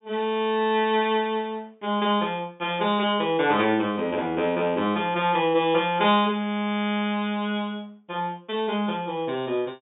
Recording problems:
treble cut off; nothing above 3.7 kHz

